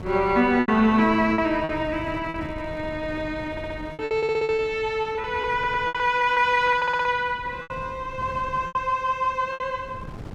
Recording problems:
wind on the microphone; below 330 Hz, SNR 17 dB
packet loss; 10% of the sound replaced, filled with repeated pitch periods
audio stuttering; 4 times, first at 3.5 s

